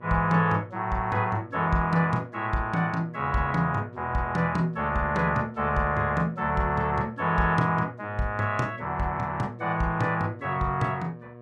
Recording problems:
mains hum; 60 Hz, harmonics up to 1.8 kHz, SNR 20 dB

